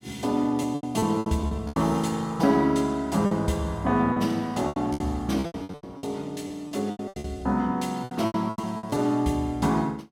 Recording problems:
packet loss; 15% of the sound replaced, filled with repeated pitch periods

